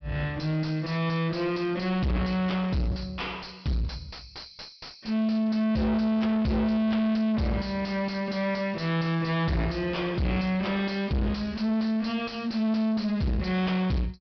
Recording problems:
treble missing; nothing above 5.5 kHz
distortion; soft clipping, signal-to-distortion ratio 5 dB

